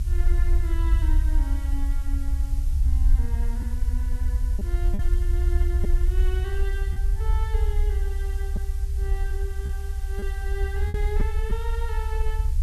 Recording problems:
background hiss; slope +3 dB per octave, SNR 12 dB
low-frequency rumble; below 66 Hz, SNR -12 dB
lost packets; 2% of the sound replaced, filled with repeated pitch periods

